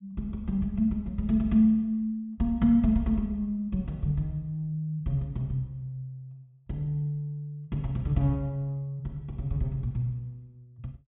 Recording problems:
treble missing; nothing above 4 kHz

